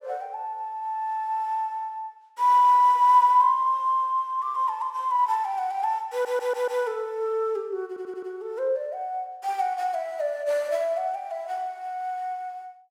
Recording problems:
audio stuttering; at 6 s and at 8 s

